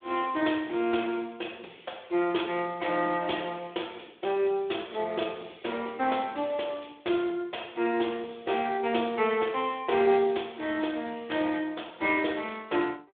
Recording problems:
phone line; 280 Hz to 3.6 kHz, Speex

